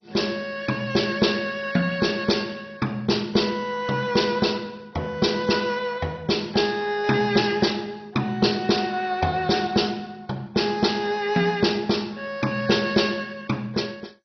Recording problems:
codec artefacts; MP2, log-spectral distance 5 dB, nothing above 5.5 kHz

